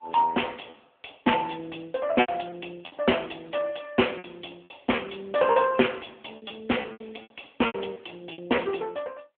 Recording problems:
phone line; 260 Hz to 3.3 kHz, AMR-NB
lost packets; 10% of the sound replaced, filled with repeated pitch periods

